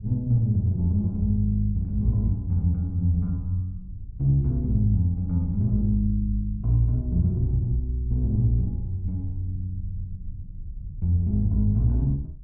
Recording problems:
rumble; below 88 Hz, SNR 15 dB

